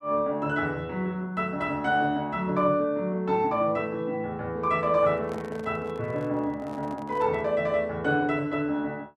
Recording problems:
handling noise; from 5 to 7.5 s; peak -10 dB vs average level

